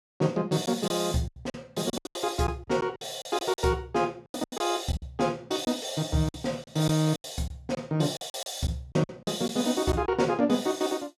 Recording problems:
packet loss; 12% of the sound replaced, filled with silence

